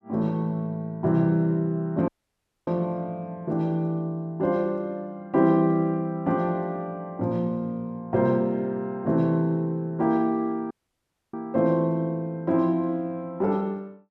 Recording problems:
dropout; at 2 s for 0.5 s and at 11 s for 0.5 s

